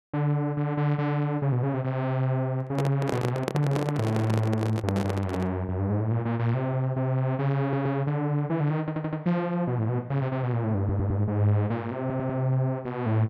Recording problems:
microphone handling noise; from 2.5 to 5.5 s; peak +2 dB vs average level
audio stuttering; 4 times, first at 7.5 s

